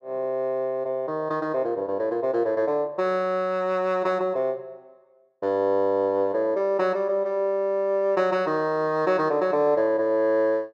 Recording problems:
none

